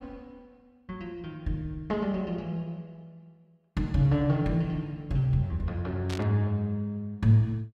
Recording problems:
burst of static; at 6 s; peak -6 dB vs average level

